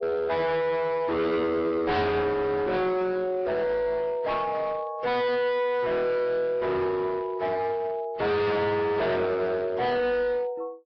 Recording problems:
treble missing; nothing above 5.5 kHz
codec artefacts; AAC, then AAC, log-spectral distance 2 dB
distortion; hard clipping, uneven, signal-to-distortion ratio 6 dB

